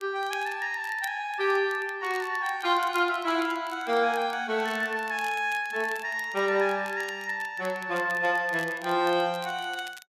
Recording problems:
crackling; vinyl, SNR 21 dB

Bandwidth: 14 kHz